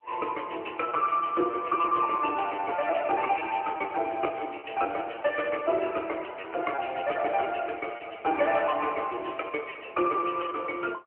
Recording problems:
phone line; 280 Hz to 3.2 kHz, AMR-NB
packet loss; 14% of the sound replaced, filled with repeated pitch periods

